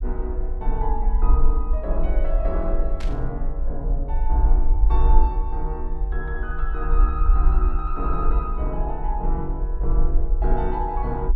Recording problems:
rumble; below 46 Hz, strongest tone 20 Hz, SNR -6 dB
static burst; at 3 s; peak -5 dB vs average level

